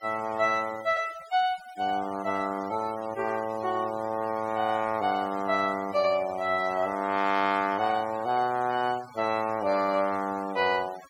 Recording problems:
denoising artefacts; signal-to-artefact ratio 19 dB

